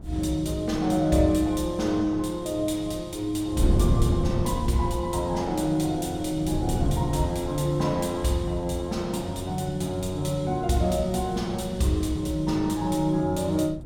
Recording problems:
wind on the microphone; below 180 Hz, SNR 7 dB

